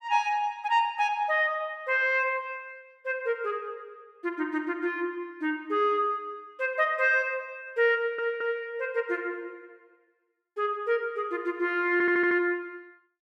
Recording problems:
stutter; at 8 s and at 12 s

